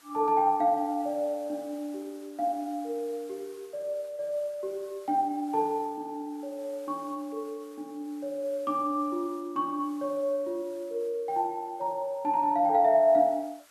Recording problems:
hiss; SNR 27 dB

